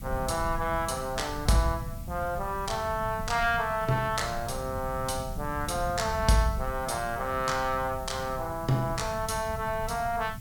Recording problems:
background hiss; SNR 20 dB
rumble; below 150 Hz, SNR 10 dB

